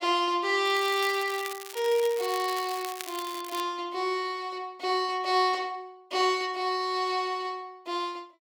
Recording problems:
crackle; from 0.5 to 3.5 s; loose cable, SNR 12 dB

